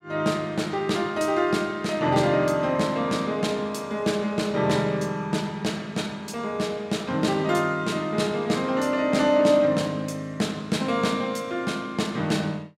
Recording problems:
none

